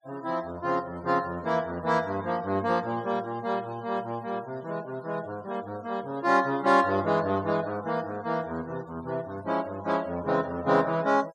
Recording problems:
denoising artefacts; signal-to-artefact ratio 22 dB

